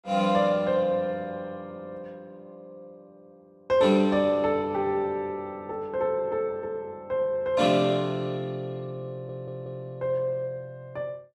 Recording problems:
stutter; at 9 s

